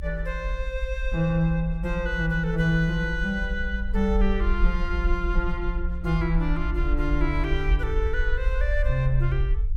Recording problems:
low-frequency rumble; below 54 Hz, SNR 2 dB

